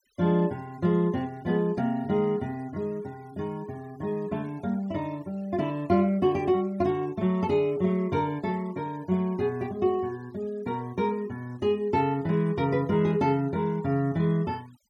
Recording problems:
noise reduction artefacts; signal-to-artefact ratio 27 dB

